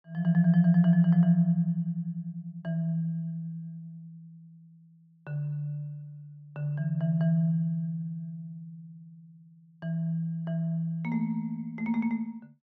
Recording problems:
none

